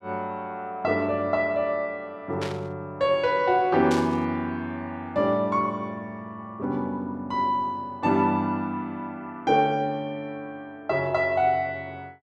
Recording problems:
static burst; at 2.5 s and at 4 s; peak -4 dB vs average level

